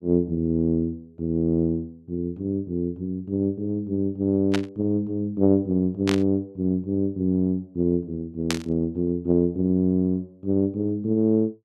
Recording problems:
burst of static; at 4.5 s, at 6 s and at 8.5 s; peak +2 dB vs average level

